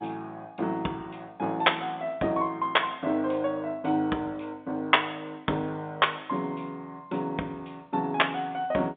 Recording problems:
telephone audio; 170 Hz to 3.7 kHz, G.711

